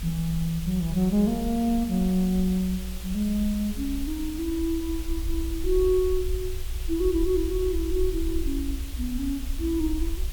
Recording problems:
background hiss; slope -1 dB per octave, SNR 14 dB
rumble; below 58 Hz, SNR 8 dB

